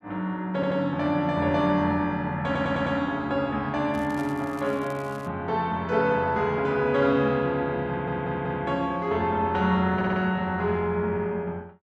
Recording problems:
stutter; 4 times, first at 0.5 s
crackle; from 4 to 5.5 s; loose cable, SNR 25 dB

